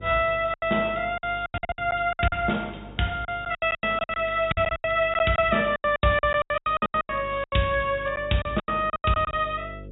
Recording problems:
treble cut off; nothing above 4 kHz
mains hum; 50 Hz, harmonics up to 550 Hz, SNR 19 dB
lost packets; 19% of the sound replaced, filled with silence
crackle; from 3.5 to 8 s; loose cable, SNR 26 dB

